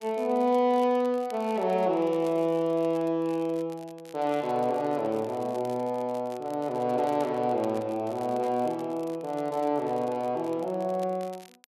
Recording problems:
crackle; vinyl, SNR 25 dB

